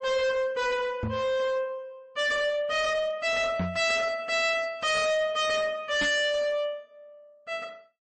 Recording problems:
codec artefacts; MP3, log-spectral distance 2 dB, nothing above 8 kHz
distortion; hard clipping, uneven, signal-to-distortion ratio 7 dB
knock on the microphone; at 1 s, at 3.5 s and at 6 s; peak +1 dB vs average level

